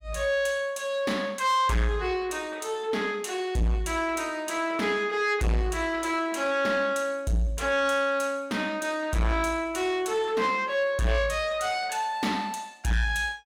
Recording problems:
distorted audio; soft clipping, signal-to-distortion ratio 8 dB

